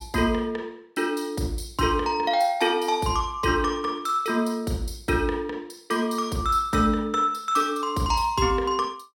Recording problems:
none

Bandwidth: 16.5 kHz